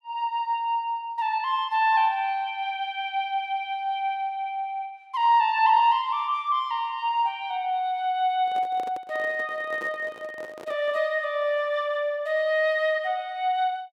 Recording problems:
handling noise; from 8.5 to 11 s; peak -10 dB vs average level

